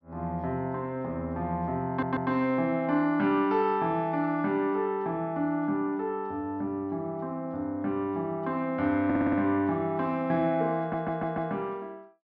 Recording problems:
treble cut off; nothing above 6 kHz
audio stuttering; at 2 s, at 9 s and at 11 s

